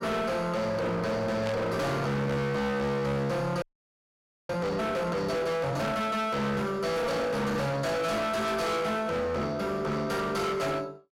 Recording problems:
distorted audio; hard clipping, signal-to-distortion ratio 6 dB
static burst; at 1.5 s; peak -6 dB vs average level
frozen audio; at 3.5 s for 1 s

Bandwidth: 16 kHz